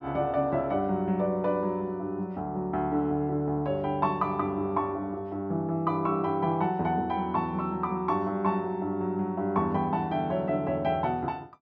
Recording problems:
none

